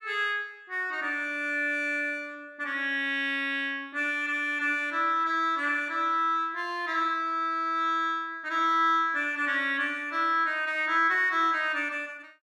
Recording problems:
none

